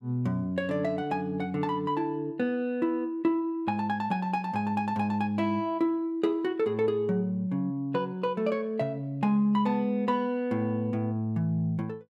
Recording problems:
none

